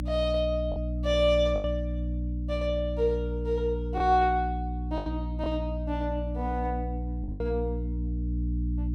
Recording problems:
hum; 60 Hz, harmonics up to 300 Hz, SNR 3 dB
packet loss; 4% of the sound replaced, filled with the last packet

